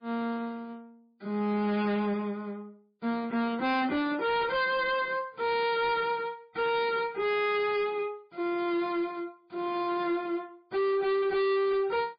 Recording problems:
codec artefacts; MP3, log-spectral distance 2 dB, nothing above 4.6 kHz
distorted audio; hard clipping, signal-to-distortion ratio 6 dB

